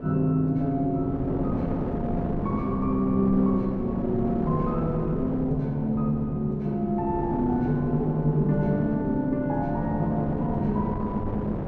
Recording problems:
wind noise; below 410 Hz, SNR 7 dB

